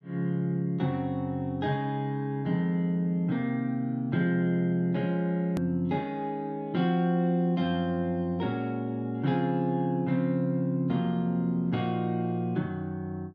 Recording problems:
hard cut with a click; at 5.5 s

